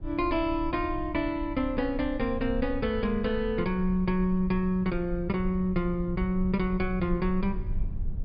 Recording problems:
treble cut off; nothing above 5 kHz
low-frequency rumble; below 68 Hz, SNR 10 dB

